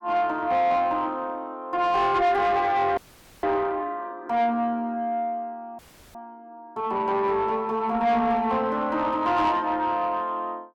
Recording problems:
distorted audio; soft clipping, signal-to-distortion ratio 11 dB
audio freezing; at 3 s and at 6 s

